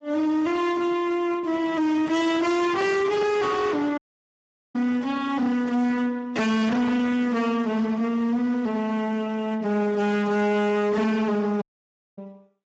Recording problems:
lossy codec; Speex, log-spectral distance 3 dB, nothing above 7.6 kHz
distorted audio; hard clipping, signal-to-distortion ratio 6 dB
audio cutting out; at 4 s for 1 s and at 12 s for 0.5 s

